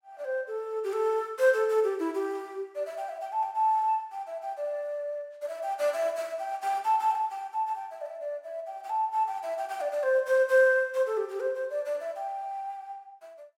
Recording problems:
none

